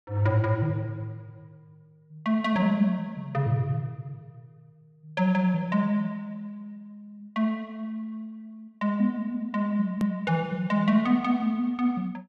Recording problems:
click at an edit; at 10 s

